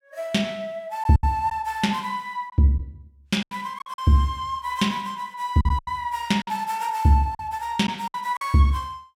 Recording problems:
lost packets; 7% of the sound replaced, filled with silence

